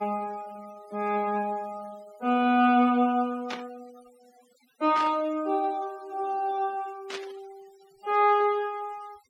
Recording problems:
denoising artefacts; signal-to-artefact ratio 26 dB
burst of static; at 3.5 s, at 5 s and at 7 s; peak -6 dB vs average level

